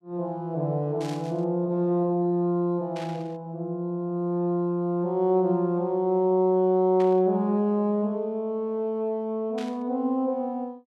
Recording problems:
burst of static; 4 times, first at 1 s; peak -12 dB vs average level

